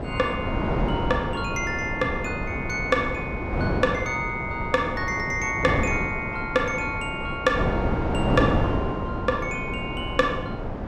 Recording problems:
wind on the microphone; below 560 Hz, SNR 2 dB

